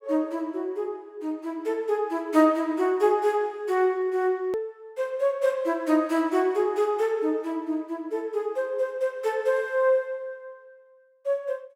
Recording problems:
hard cut with a click; at 4.5 s

